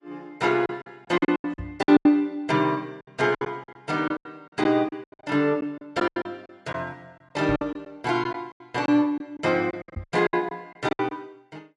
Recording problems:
codec artefacts; AAC, log-spectral distance 2 dB
packet loss; 16% of the sound replaced, filled with silence
knock on the microphone; at 1.5 s, at 7.5 s and at 10 s; peak -2 dB vs average level

